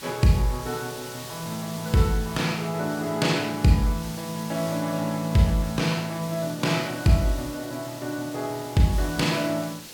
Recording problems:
background hiss; SNR 14 dB

